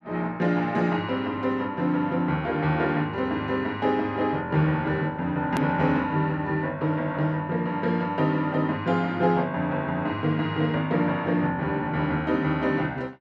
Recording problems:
click at an edit; at 5.5 s

